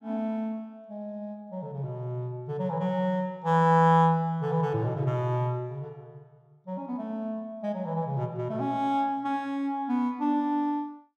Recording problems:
none

